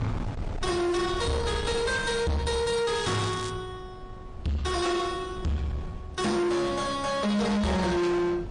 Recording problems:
codec artefacts; MP3, log-spectral distance 3 dB, nothing above 9 kHz
distorted audio; soft clipping, signal-to-distortion ratio 7 dB
wind noise; below 540 Hz, SNR 11 dB
crackling; at 3 s; loose cable, SNR 12 dB

